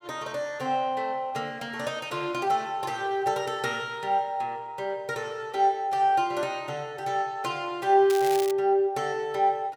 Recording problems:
crackle; at 8 s; loose cable, SNR 11 dB

